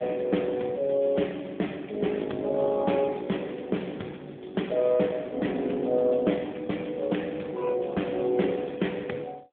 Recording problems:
telephone audio; 150 Hz to 3.6 kHz, AMR-NB

